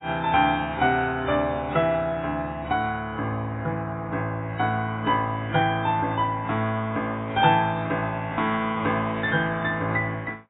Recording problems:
codec artefacts; AAC, log-spectral distance 2 dB, nothing above 3.2 kHz

